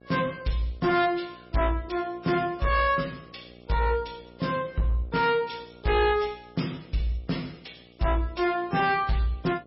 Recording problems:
lossy codec; MP3, log-spectral distance 5 dB, nothing above 5.5 kHz
distortion; hard clipping, uneven, signal-to-distortion ratio 10 dB
mains hum; 60 Hz, harmonics up to 1.4 kHz, SNR 25 dB

